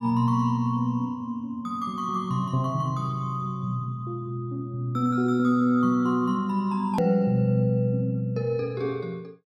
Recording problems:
edit click; at 7 s

